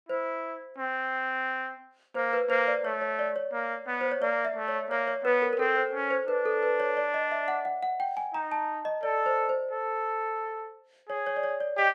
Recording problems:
none

